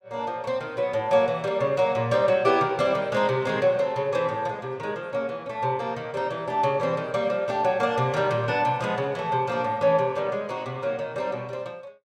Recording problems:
none

